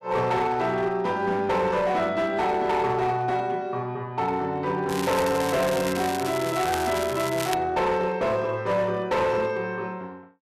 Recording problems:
distorted audio; hard clipping, signal-to-distortion ratio 12 dB
crackle; from 5 to 7.5 s; loose cable, SNR 10 dB

